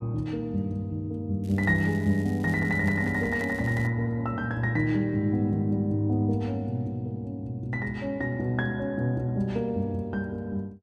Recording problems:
crackle; from 1.5 to 4 s; loose cable, SNR 24 dB

